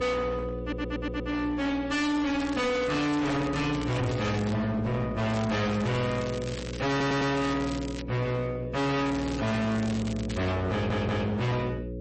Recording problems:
codec artefacts; MP3, log-spectral distance 3 dB, nothing above 8.2 kHz
distortion; hard clipping, signal-to-distortion ratio 6 dB
hum; 60 Hz, harmonics up to 540 Hz, SNR 10 dB
audio stuttering; at 0.5 s, at 7 s and at 11 s
crackle; from 2 to 4.5 s, from 5.5 to 8 s and from 9 to 10 s; loose cable, SNR 14 dB
microphone thump; at 4 s; peak +5 dB vs average level

